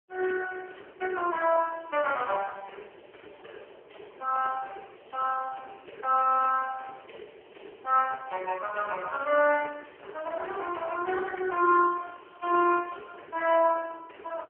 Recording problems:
phone line; 300 Hz to 2.6 kHz, AMR-NB

